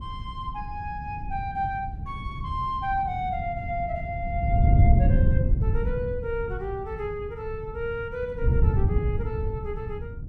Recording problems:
wind noise; below 120 Hz, SNR -4 dB

